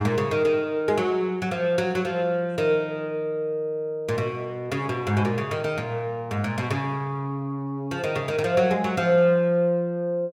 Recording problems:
none

